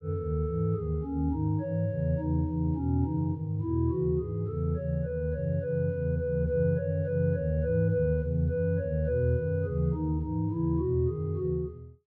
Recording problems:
none

